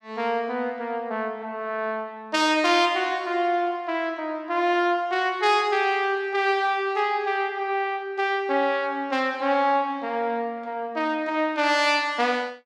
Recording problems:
none

